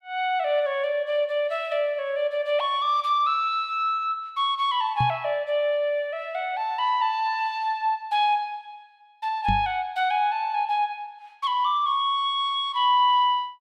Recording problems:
microphone thump; at 5 s and at 9.5 s; peak 0 dB vs average level

